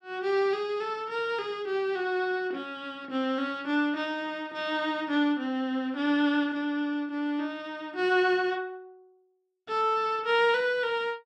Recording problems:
none

